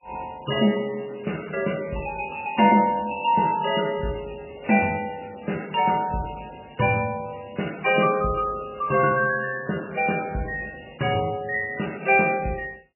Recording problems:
lossy codec; MP3, log-spectral distance 9 dB, nothing above 2.4 kHz

